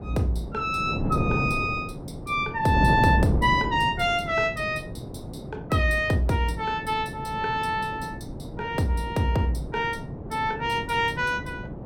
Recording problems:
wind noise; below 360 Hz, SNR 7 dB

